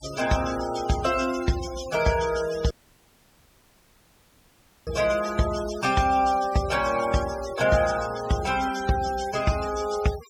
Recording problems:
noise reduction artefacts; signal-to-artefact ratio 13 dB
audio cutting out; at 2.5 s for 2 s

